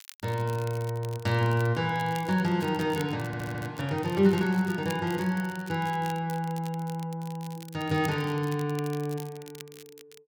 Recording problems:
crackling; vinyl, SNR 19 dB
audio stuttering; at 3.5 s

